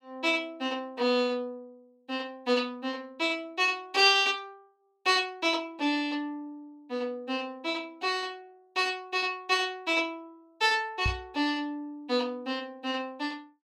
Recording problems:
microphone bump; at 11 s; peak +1 dB vs average level

